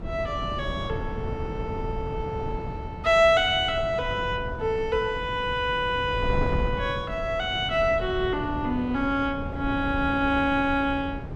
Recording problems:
wind noise; below 240 Hz, SNR 9 dB

